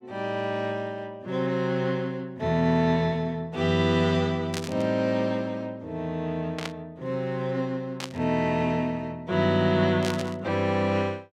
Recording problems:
burst of static; 4 times, first at 4.5 s; peak -2 dB vs average level

